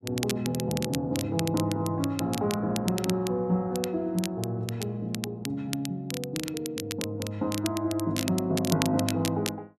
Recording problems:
crackle; vinyl, SNR 8 dB

